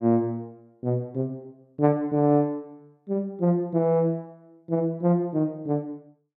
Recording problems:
none

